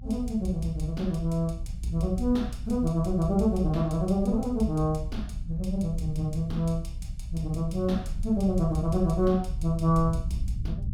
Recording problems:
rumble; below 84 Hz, SNR 8 dB

